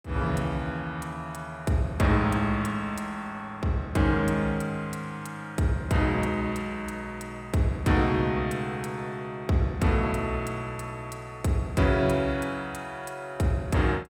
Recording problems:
none

